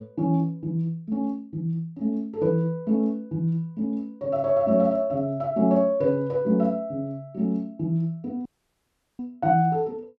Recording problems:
dropout; at 8.5 s for 0.5 s

